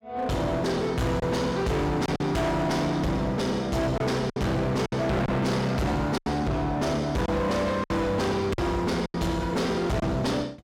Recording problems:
distorted audio; hard clipping, signal-to-distortion ratio 7 dB
lost packets; 5% of the sound replaced, filled with silence

